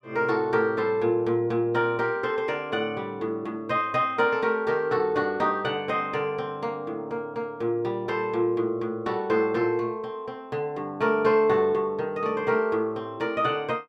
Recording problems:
none

